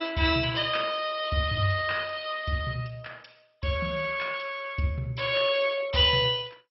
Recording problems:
lossy compression; MP2, log-spectral distance 5 dB, nothing above 4.9 kHz

